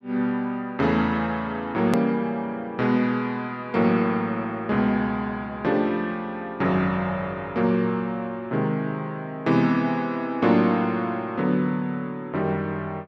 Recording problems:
click at an edit; at 2 s

